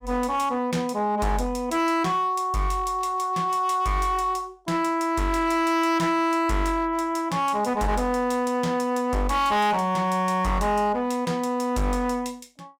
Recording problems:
distortion; hard clipping, uneven, signal-to-distortion ratio 10 dB

